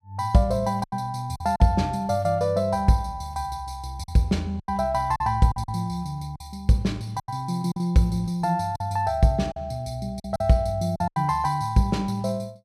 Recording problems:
lost packets; 7% of the sound replaced, filled with silence

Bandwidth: 14 kHz